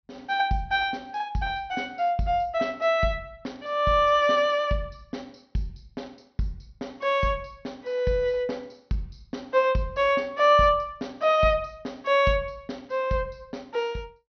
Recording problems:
treble cut off; nothing above 6.1 kHz

